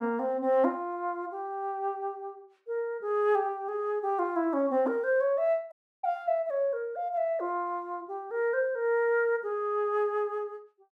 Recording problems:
dropout; at 5.5 s

